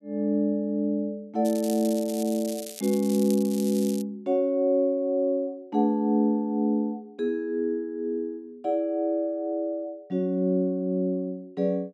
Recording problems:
crackling; from 1.5 to 4 s; loose cable, SNR 13 dB

